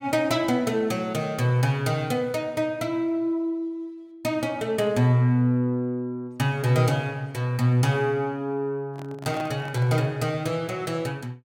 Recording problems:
microphone handling noise; from 9 to 10 s; peak -8 dB vs average level

